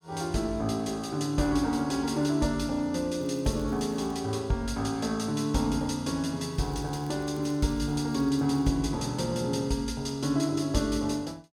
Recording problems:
crackle; at 3 s and from 6.5 to 8.5 s; loose cable, SNR 29 dB

